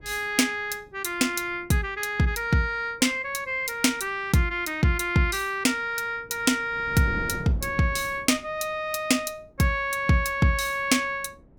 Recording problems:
wind on the microphone; below 320 Hz, SNR 17 dB

